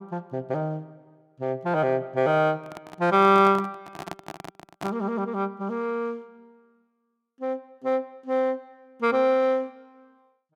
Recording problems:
microphone handling noise; from 2.5 to 5 s; peak -6 dB vs average level

